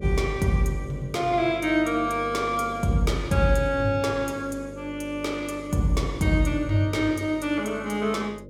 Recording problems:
electrical hum; 50 Hz, harmonics up to 600 Hz, SNR 15 dB

